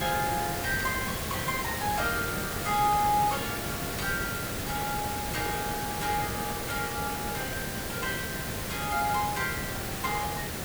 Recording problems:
hiss; SNR 1 dB

